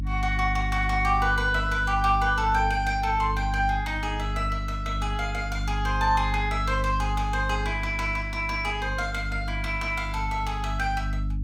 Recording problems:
mains hum; 50 Hz, harmonics up to 300 Hz, SNR 4 dB

